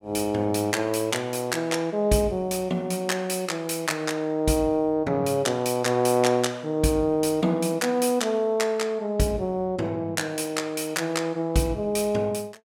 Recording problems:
none

